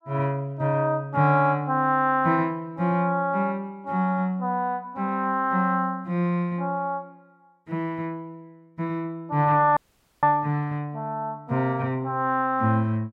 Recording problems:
audio cutting out; at 10 s

